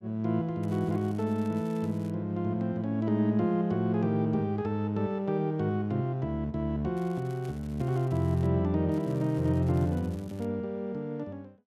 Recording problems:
crackle; from 0.5 to 2 s, from 7 to 8.5 s and from 9 to 10 s; loose cable, SNR 28 dB

